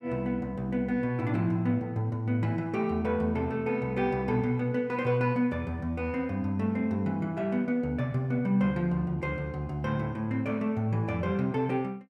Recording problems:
none

